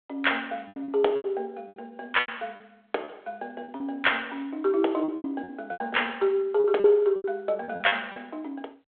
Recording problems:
phone line; 340 Hz to 3.5 kHz, G.726
packet loss; 12% of the sound replaced, filled with repeated pitch periods

